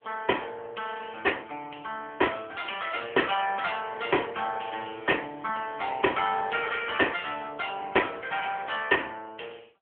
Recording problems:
telephone audio; 280 Hz to 3 kHz, AMR-NB

